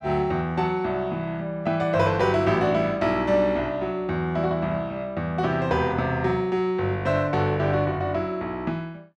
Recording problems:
none

